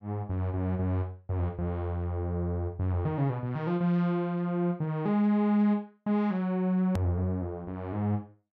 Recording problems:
click at an edit; at 7 s

